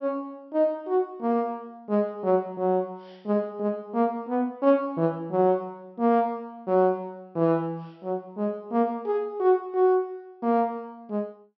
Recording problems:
treble cut off; nothing above 5.8 kHz

